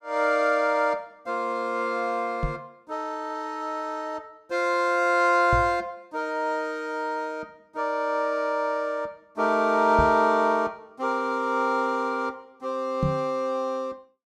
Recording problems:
microphone bump; 4 times, first at 2.5 s; peak +3 dB vs average level

